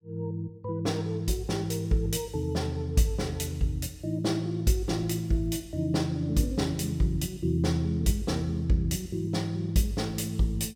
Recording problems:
none

